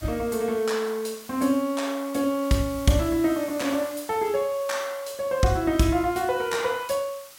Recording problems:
background hiss; SNR 18 dB

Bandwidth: 16.5 kHz